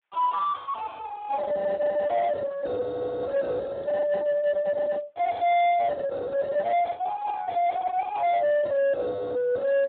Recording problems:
telephone audio; 990 Hz to 3 kHz, Speex
distorted audio; soft clipping, signal-to-distortion ratio 10 dB

